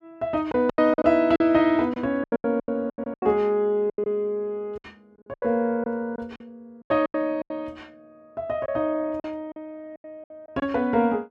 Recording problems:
packet loss; 14% of the sound replaced, filled with silence

